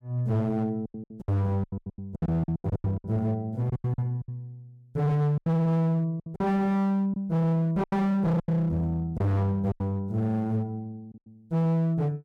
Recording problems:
distortion; hard clipping, signal-to-distortion ratio 8 dB
packet loss; 13% of the sound replaced, filled with silence

